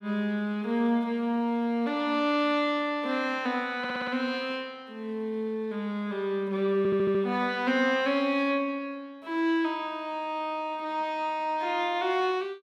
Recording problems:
stutter; at 4 s and at 7 s

